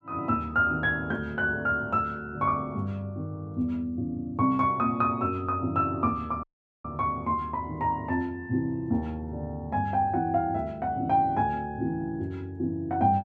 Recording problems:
audio cutting out; at 6.5 s

